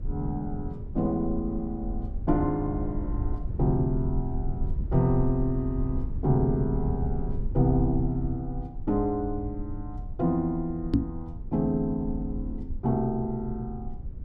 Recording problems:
rumble; below 78 Hz, SNR 6 dB
microphone bump; at 11 s; peak +10 dB vs average level

